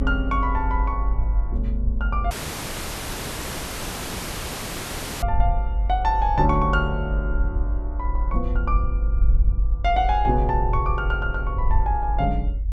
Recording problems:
low-frequency rumble; below 52 Hz, strongest tone 48 Hz, SNR 0 dB
dropout; at 2.5 s for 3 s

